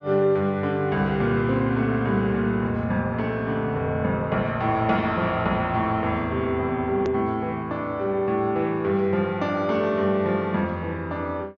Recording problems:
low-pass filter; nothing above 6.8 kHz
edit click; at 7 s

